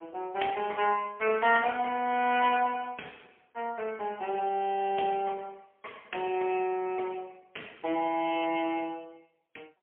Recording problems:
phone line; 280 Hz to 3.1 kHz, AMR-NB, then MP3

